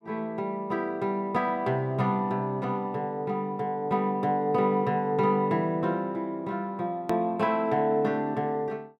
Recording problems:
hard cut with a click; at 7 s

